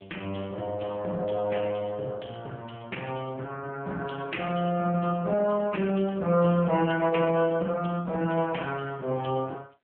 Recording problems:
telephone audio; 280 Hz to 3 kHz, AMR-NB

